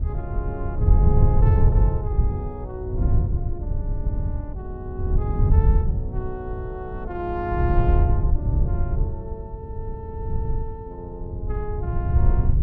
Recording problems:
wind noise; below 100 Hz, SNR -9 dB

